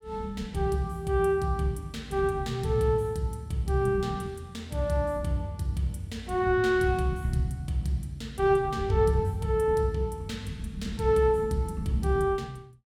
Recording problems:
none

